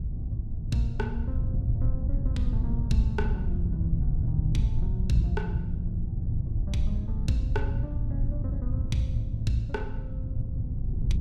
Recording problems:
wind noise; below 100 Hz, SNR -2 dB

